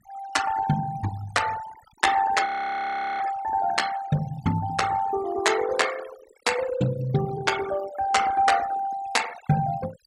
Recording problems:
denoising artefacts; signal-to-artefact ratio 14 dB
audio freezing; at 2.5 s for 0.5 s

